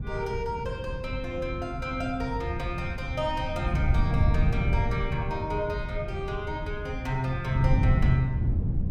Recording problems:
wind on the microphone; below 130 Hz, SNR -1 dB

